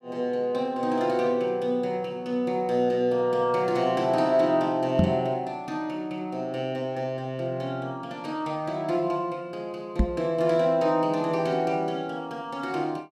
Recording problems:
microphone thump; at 5 s and at 10 s; peak +8 dB vs average level

